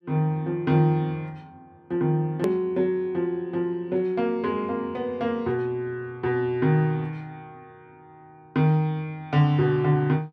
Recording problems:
hard cut with a click; at 2.5 s

